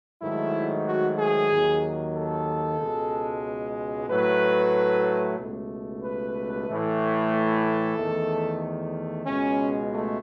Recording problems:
none

